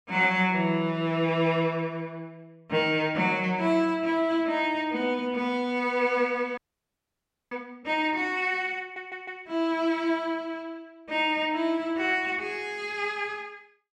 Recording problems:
audio freezing; at 6.5 s for 1 s
audio stuttering; at 9 s

